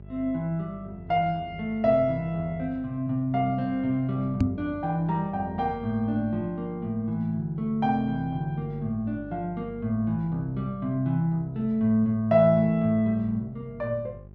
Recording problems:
hum; 50 Hz, harmonics up to 600 Hz, SNR 19 dB
microphone thump; at 4.5 s; peak +7 dB vs average level

